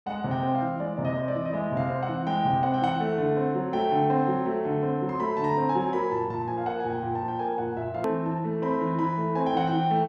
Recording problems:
edit click; at 8 s

